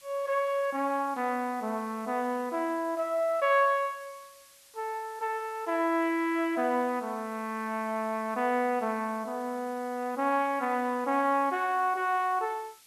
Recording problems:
background hiss; slope +3 dB per octave, SNR 24 dB

